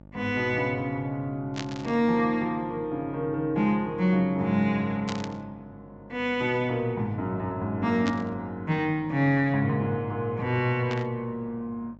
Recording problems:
treble missing; nothing above 8 kHz
electrical hum; 50 Hz, harmonics up to 950 Hz, SNR 23 dB
burst of static; 4 times, first at 1.5 s; peak -4 dB vs average level

